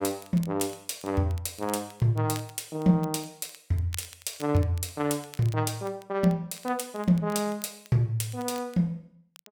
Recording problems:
crackling; vinyl, SNR 21 dB

